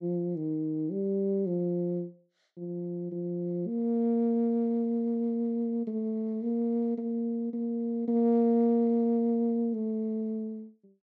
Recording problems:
none

